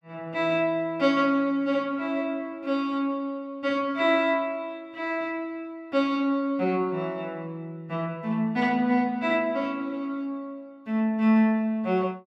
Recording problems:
none

